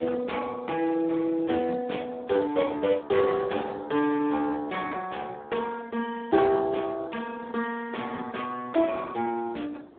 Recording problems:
phone line; 260 Hz to 3 kHz, Speex
wind noise; below 700 Hz, SNR 23 dB

